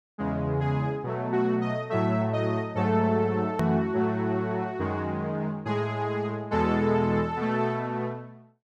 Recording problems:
edit click; at 3.5 s

